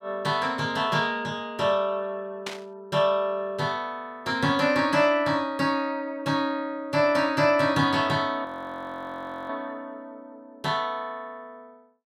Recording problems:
static burst; at 2.5 s; peak -3 dB vs average level
audio freezing; at 8.5 s for 1 s

